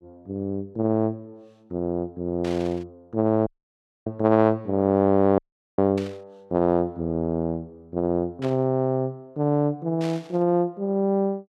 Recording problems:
burst of static; 4 times, first at 2.5 s; peak -10 dB vs average level
audio cutting out; at 3.5 s for 0.5 s and at 5.5 s

